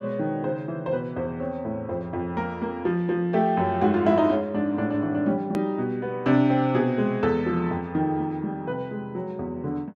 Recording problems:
edit click; at 5.5 s

